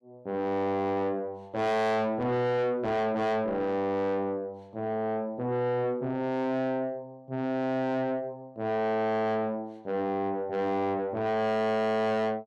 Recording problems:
distorted audio; soft clipping, signal-to-distortion ratio 7 dB

